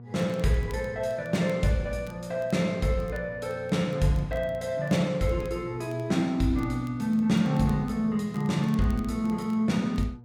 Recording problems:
hum; 60 Hz, harmonics up to 720 Hz, SNR 19 dB
crackling; vinyl, SNR 30 dB

